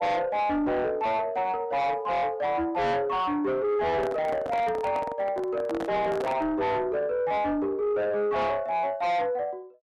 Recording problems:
distorted audio; soft clipping, signal-to-distortion ratio 8 dB
microphone handling noise; from 4 to 6.5 s; peak -3 dB vs average level

